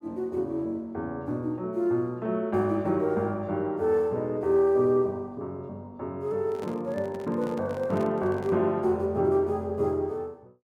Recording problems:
handling noise; from 6.5 to 8.5 s; peak -7 dB vs average level

